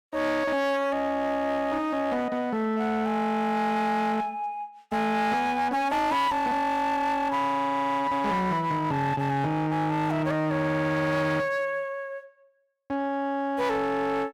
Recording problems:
distorted audio; hard clipping, uneven, signal-to-distortion ratio 10 dB

